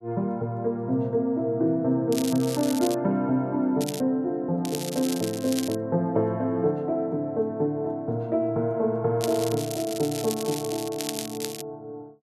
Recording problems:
crackling; 4 times, first at 2 s; loose cable, SNR 10 dB

